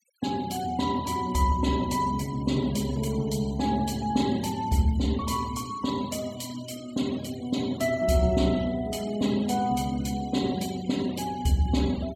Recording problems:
denoising artefacts; signal-to-artefact ratio 18 dB

